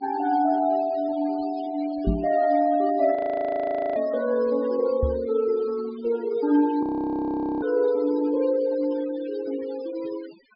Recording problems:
treble missing; nothing above 5.1 kHz
noise reduction artefacts; signal-to-artefact ratio 19 dB
microphone bump; at 2 s and at 5 s; peak +4 dB vs average level
frozen audio; at 3 s for 1 s and at 7 s for 1 s

